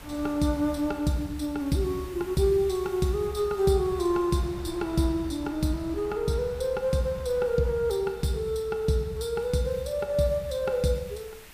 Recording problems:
background hiss; SNR 24 dB
wind on the microphone; below 830 Hz, SNR 21 dB

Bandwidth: 15 kHz